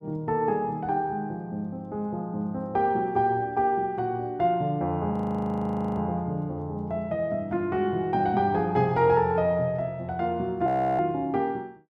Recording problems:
audio freezing; at 5 s for 1 s and at 11 s

